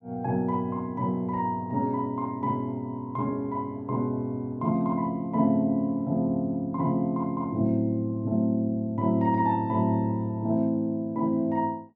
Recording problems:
none

